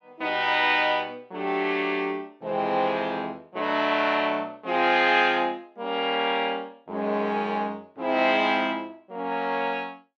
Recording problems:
none

